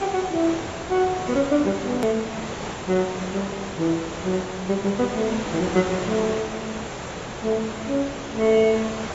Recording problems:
codec artefacts; AAC, log-spectral distance 13 dB, nothing above 13.1 kHz
background hiss; slope -5 dB per octave, SNR 7 dB
hard cut with a click; at 2 s

